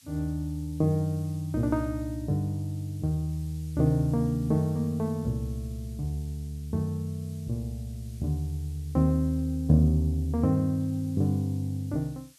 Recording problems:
hiss; slope +4 dB per octave, SNR 26 dB

